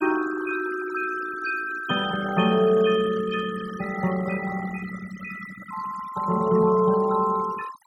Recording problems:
denoising artefacts; signal-to-artefact ratio 13 dB

